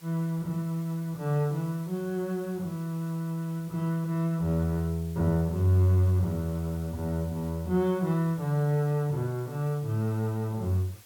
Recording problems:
background hiss; slope 0 dB per octave, SNR 23 dB

